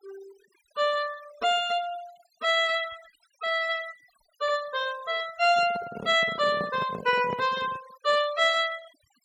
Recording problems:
noise reduction artefacts; signal-to-artefact ratio 20 dB
handling noise; from 5.5 to 8 s; peak -5 dB vs average level

